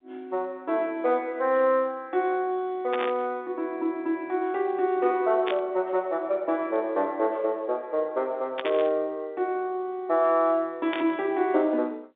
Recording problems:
telephone audio; 220 Hz to 3.7 kHz, G.711
burst of static; 4 times, first at 3 s; peak -2 dB vs average level

